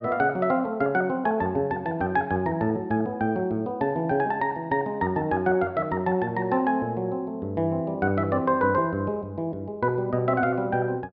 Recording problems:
treble cut off; nothing above 5.5 kHz

